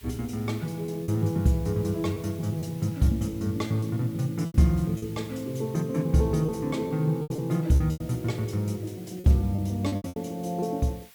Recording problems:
hiss; SNR 23 dB
packet loss; 7% of the sound replaced, filled with repeated pitch periods

